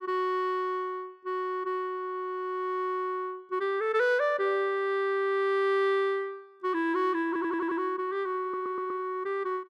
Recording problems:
audio stuttering; at 7.5 s and at 8.5 s

